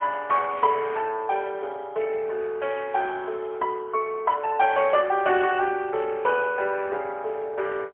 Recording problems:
telephone audio; 320 Hz to 3.3 kHz, AMR-NB, then MP3

